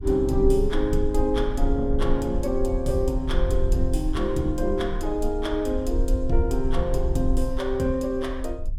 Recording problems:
low-frequency rumble; below 52 Hz, SNR 4 dB

